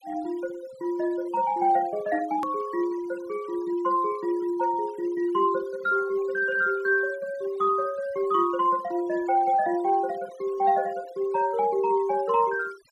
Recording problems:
noise reduction artefacts; signal-to-artefact ratio 23 dB
hard cut with a click; at 2.5 s

